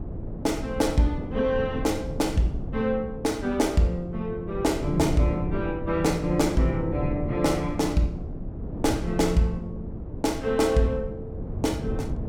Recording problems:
wind noise; below 230 Hz, SNR 8 dB

